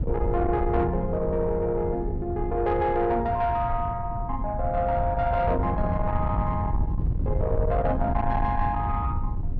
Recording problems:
distorted audio; soft clipping, signal-to-distortion ratio 12 dB
wind on the microphone; below 120 Hz, SNR 4 dB

